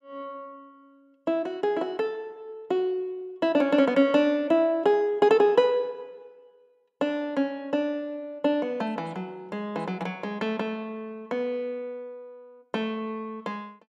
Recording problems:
none

